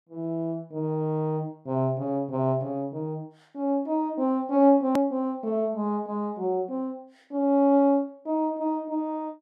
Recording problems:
click at an edit; at 5 s

